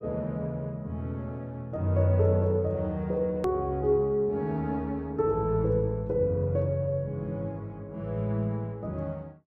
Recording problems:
hard cut with a click; at 3.5 s

